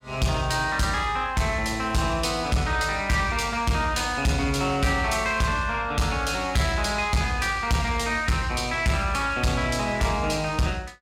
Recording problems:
distorted audio; soft clipping, signal-to-distortion ratio 11 dB

